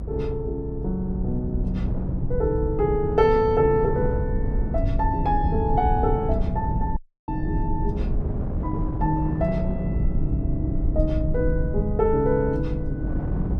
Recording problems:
low-frequency rumble; below 100 Hz, SNR 3 dB
wind on the microphone; below 310 Hz, SNR 11 dB
dropout; at 7 s

